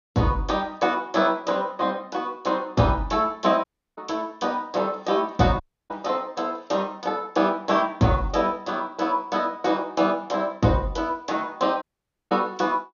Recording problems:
treble cut off; nothing above 6.7 kHz
audio cutting out; at 3.5 s, at 5.5 s and at 12 s

